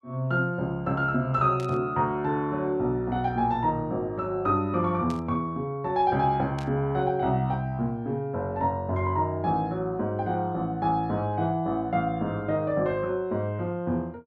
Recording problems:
burst of static; at 1.5 s, at 5 s and at 6.5 s; peak -12 dB vs average level

